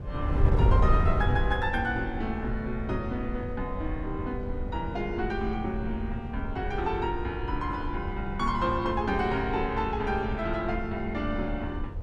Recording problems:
wind noise; below 100 Hz, SNR 2 dB

